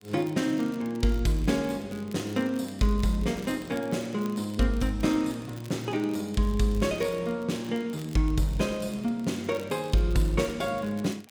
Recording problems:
crackling; vinyl, SNR 23 dB

